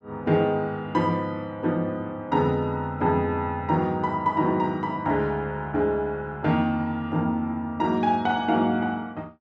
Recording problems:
none

